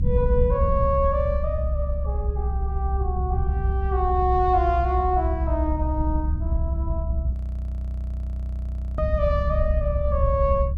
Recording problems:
rumble; below 68 Hz, strongest tone 66 Hz, SNR 0 dB
frozen audio; at 7.5 s for 1.5 s

